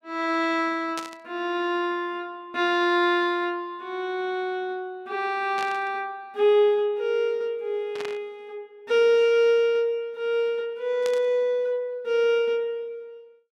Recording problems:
burst of static; 4 times, first at 1 s; peak -5 dB vs average level

